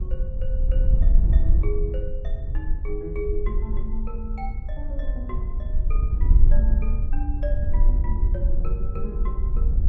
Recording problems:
wind noise; below 52 Hz, SNR -11 dB

